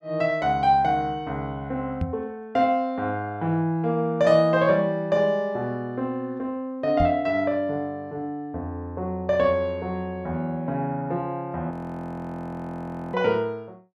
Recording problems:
microphone bump; at 2 s and at 7 s; peak +2 dB vs average level
audio freezing; at 12 s for 1.5 s

